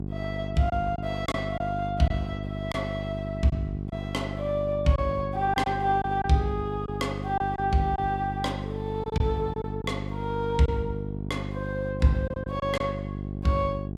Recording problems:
hum; 50 Hz, harmonics up to 750 Hz, SNR 5 dB
lost packets; 4% of the sound replaced, filled with silence

